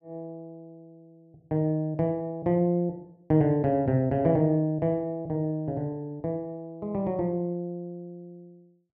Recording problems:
none

